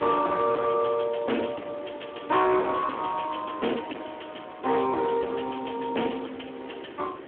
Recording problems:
phone line; 240 Hz to 3.3 kHz, Speex
distorted audio; hard clipping, signal-to-distortion ratio 7 dB
hiss; SNR 16 dB

